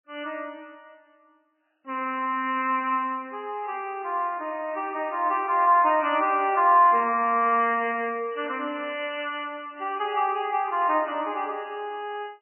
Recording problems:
codec artefacts; AAC, then MP3, log-spectral distance 4 dB, nothing above 2.6 kHz

